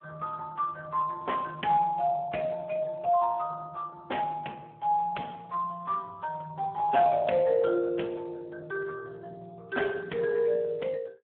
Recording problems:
phone line; 280 Hz to 2.7 kHz, Speex

